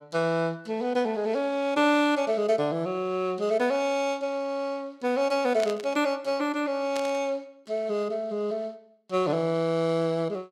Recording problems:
static burst; at 5.5 s and at 7 s; peak -6 dB vs average level

